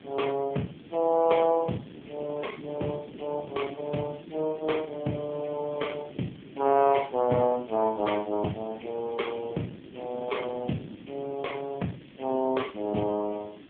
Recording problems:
telephone audio; 130 Hz to 3.3 kHz, AMR-NB
hiss; SNR 26 dB
wind on the microphone; below 400 Hz, SNR 16 dB

